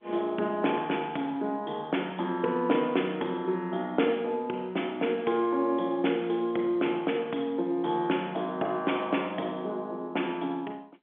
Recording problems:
telephone audio; 220 Hz to 3.4 kHz, G.711

